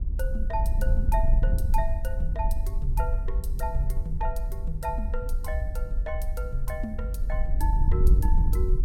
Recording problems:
wind on the microphone; below 56 Hz, SNR -7 dB

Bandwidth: 17 kHz